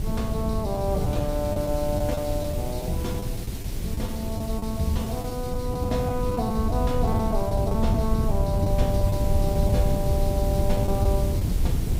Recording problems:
hiss; SNR 11 dB
wind on the microphone; below 130 Hz, SNR -1 dB
packet loss; 6% of the sound replaced, filled with the last packet

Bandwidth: 15.5 kHz